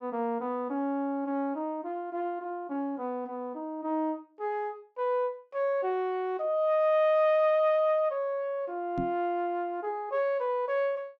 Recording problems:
microphone thump; at 9 s; peak 0 dB vs average level

